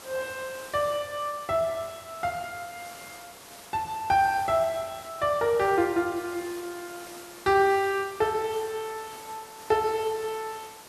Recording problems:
background hiss; slope -3 dB per octave, SNR 16 dB

